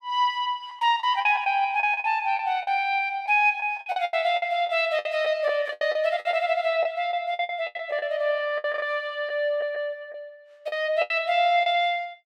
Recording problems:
packet loss; 12% of the sound replaced, filled with the last packet

